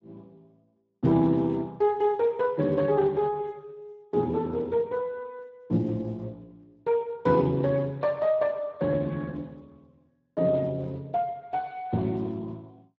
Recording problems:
codec artefacts; Speex, log-spectral distance 2 dB

